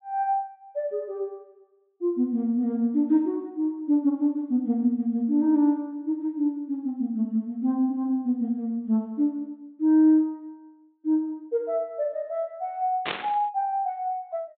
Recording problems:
treble cut off; nothing above 4 kHz
static burst; at 13 s; peak 0 dB vs average level

